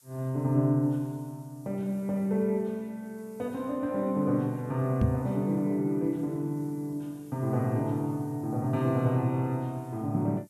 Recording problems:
background hiss; SNR 30 dB
microphone thump; at 5 s; peak +7 dB vs average level

